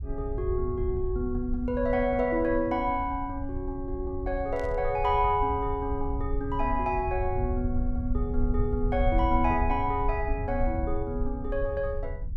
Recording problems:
rumble; below 76 Hz, SNR 5 dB
static burst; at 4.5 s; peak -16 dB vs average level

